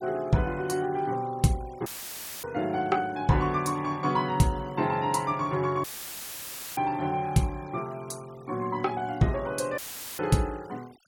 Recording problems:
denoising artefacts; signal-to-artefact ratio 23 dB
audio cutting out; at 2 s for 0.5 s, at 6 s for 1 s and at 10 s; filled with static

